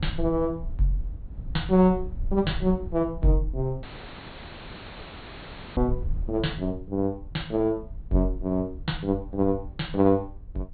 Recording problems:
treble missing; nothing above 4.4 kHz
low-frequency rumble; below 66 Hz, SNR 12 dB
audio cutting out; at 4 s for 2 s

